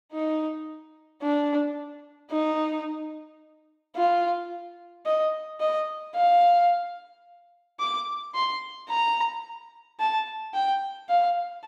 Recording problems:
none

